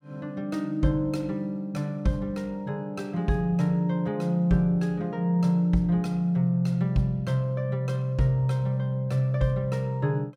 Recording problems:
none

